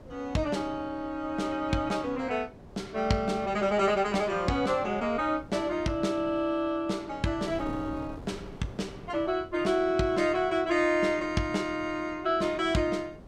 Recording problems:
wind on the microphone; below 450 Hz, SNR 19 dB

